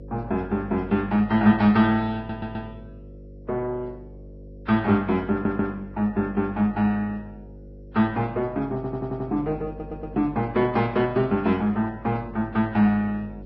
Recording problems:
lossy codec; MP2, then Vorbis, log-spectral distance 2 dB, nothing above 5.5 kHz
hum; 50 Hz, harmonics up to 550 Hz, SNR 18 dB
stutter; 4 times, first at 2 s

